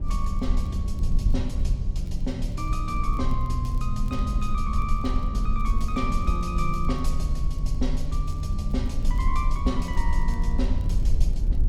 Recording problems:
low-frequency rumble; below 54 Hz, SNR -3 dB
wind on the microphone; below 90 Hz, SNR 9 dB
crackle; vinyl, SNR 29 dB

